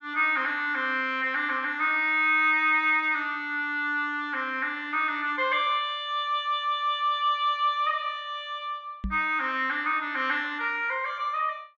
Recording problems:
treble cut off; nothing above 8 kHz
microphone thump; at 9 s; peak -3 dB vs average level

